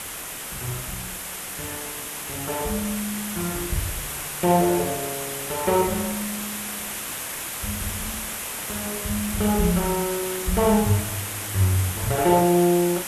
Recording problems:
background hiss; SNR 5 dB

